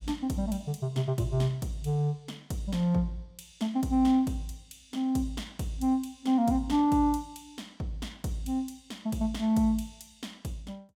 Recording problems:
none

